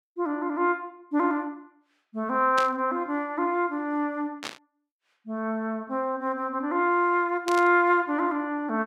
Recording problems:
burst of static; at 2.5 s, at 4.5 s and at 7.5 s; peak -2 dB vs average level

